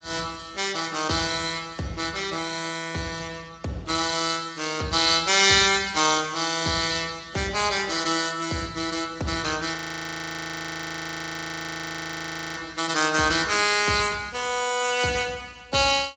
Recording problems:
lossy codec; Speex, log-spectral distance 8 dB
frozen audio; at 10 s for 3 s

